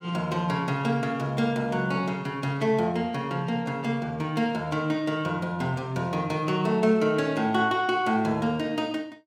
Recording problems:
none

